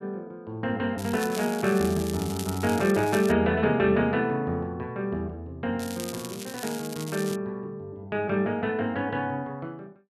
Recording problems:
crackling; from 1 to 3.5 s and from 6 to 7.5 s; loose cable, SNR 12 dB

